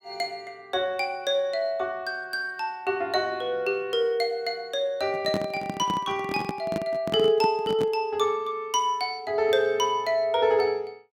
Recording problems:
microphone handling noise; from 5 to 8 s; peak 0 dB vs average level

